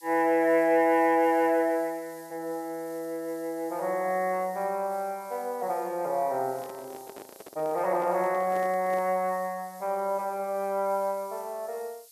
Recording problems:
hiss; slope +6 dB per octave, SNR 23 dB
handling noise; from 6.5 to 9 s; peak -11 dB vs average level

